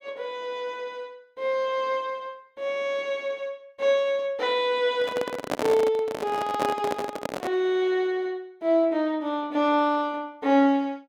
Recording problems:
microphone handling noise; from 5 to 7.5 s; peak +2 dB vs average level

